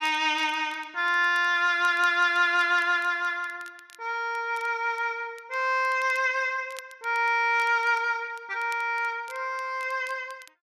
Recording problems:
crackling; vinyl, SNR 27 dB

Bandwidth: 12.5 kHz